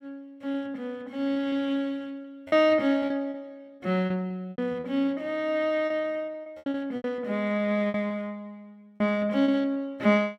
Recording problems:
lost packets; 11% of the sound replaced, filled with repeated pitch periods

